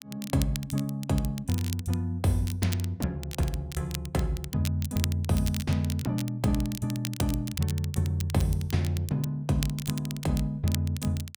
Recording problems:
crackling; vinyl, SNR 12 dB

